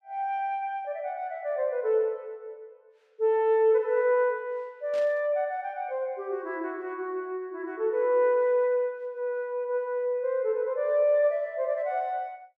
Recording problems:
burst of static; at 5 s; peak -14 dB vs average level

